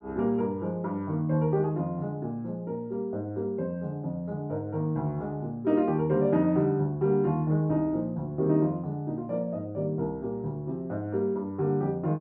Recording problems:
none

